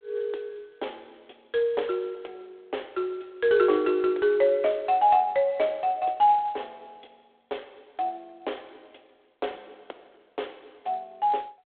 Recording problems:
telephone audio; 280 Hz to 3.8 kHz, G.726

